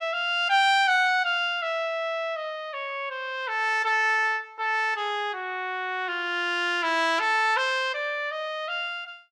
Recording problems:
none

